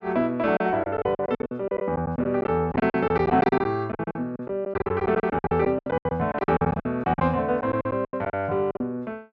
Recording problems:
packet loss; 19% of the sound replaced, filled with silence

